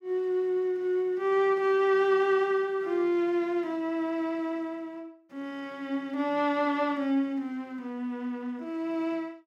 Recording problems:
none

